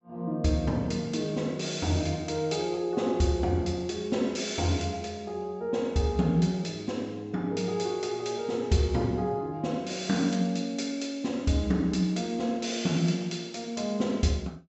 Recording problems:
low-pass filter; nothing above 7.8 kHz

